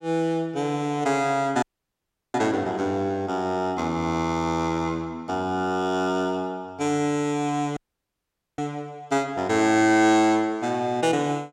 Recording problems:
dropout; at 1.5 s for 0.5 s and at 8 s for 1 s

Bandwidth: 16 kHz